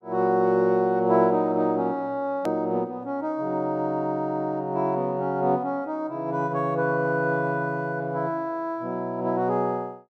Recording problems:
click at an edit; at 2.5 s

